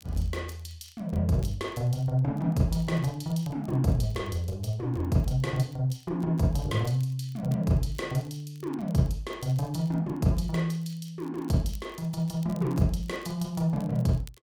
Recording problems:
crackling; vinyl, SNR 28 dB

